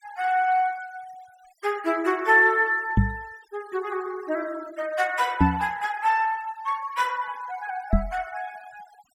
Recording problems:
noise reduction artefacts; signal-to-artefact ratio 23 dB
knock on the microphone; at 3 s, at 5.5 s and at 8 s; peak +8 dB vs average level

